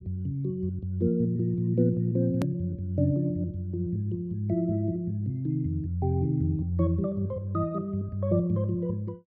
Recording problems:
click at an edit; at 2.5 s

